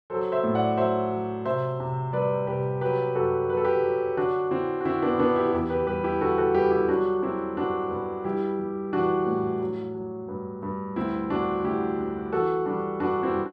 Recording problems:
none

